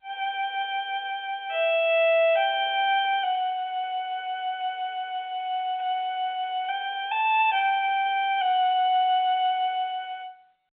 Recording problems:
phone line; 260 Hz to 3.5 kHz, G.711

